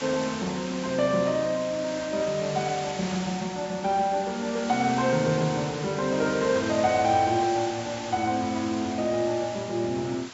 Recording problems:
low-pass filter; nothing above 8 kHz
background hiss; slope -1 dB per octave, SNR 11 dB

